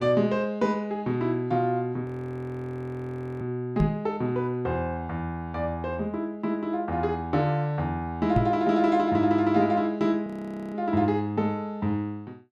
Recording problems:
audio freezing; at 2 s for 1.5 s and at 10 s
knock on the microphone; at 4 s and at 8.5 s; peak +6 dB vs average level

